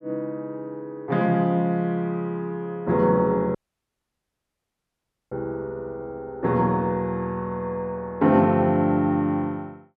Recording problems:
audio cutting out; at 3.5 s for 2 s

